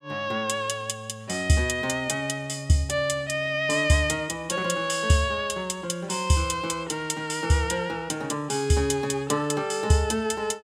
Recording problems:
none

